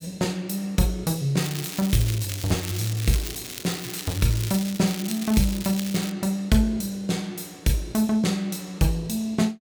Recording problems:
crackle; from 1.5 to 6 s; loose cable, SNR 9 dB

